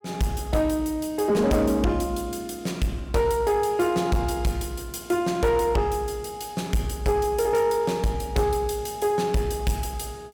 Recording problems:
distortion; soft clipping, signal-to-distortion ratio 10 dB

